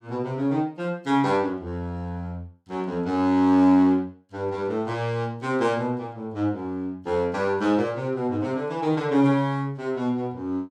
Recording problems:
none

